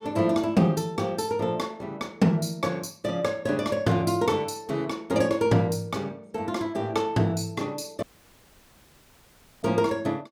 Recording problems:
audio cutting out; at 8 s for 1.5 s

